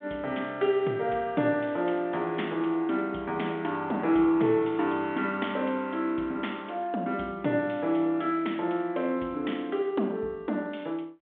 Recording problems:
phone line; 190 Hz to 3.6 kHz, G.726

